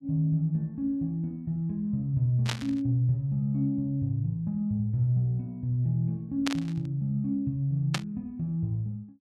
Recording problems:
burst of static; at 2.5 s, at 6.5 s and at 8 s; peak +3 dB vs average level

